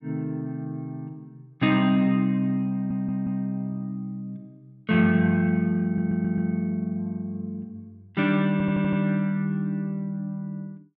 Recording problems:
audio stuttering; at 2.5 s, at 6 s and at 8.5 s

